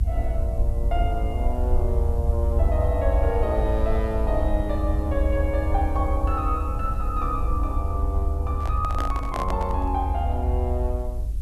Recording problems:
hiss; SNR 27 dB
rumble; below 76 Hz, SNR -3 dB
handling noise; from 8.5 to 10 s; peak +1 dB vs average level

